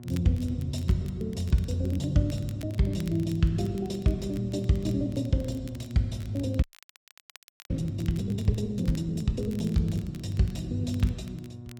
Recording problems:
lossy compression; Opus, log-spectral distance 2 dB, nothing above 17.7 kHz
hum; 60 Hz, harmonics up to 720 Hz, SNR 15 dB
crackle; vinyl, SNR 24 dB
audio freezing; at 6.5 s for 1 s

